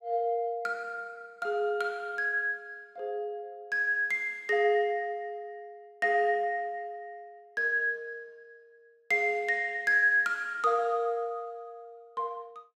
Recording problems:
none

